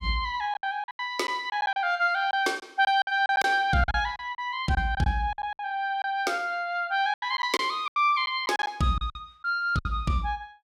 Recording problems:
lost packets; 12% of the sound replaced, filled with silence

